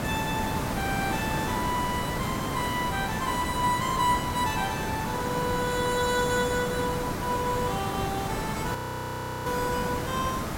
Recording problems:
hiss; slope -6 dB per octave, SNR 2 dB
frozen audio; at 9 s for 0.5 s

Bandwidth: 16.5 kHz